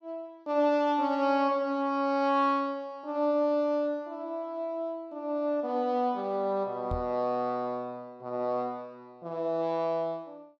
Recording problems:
knock on the microphone; at 7 s; peak -2 dB vs average level

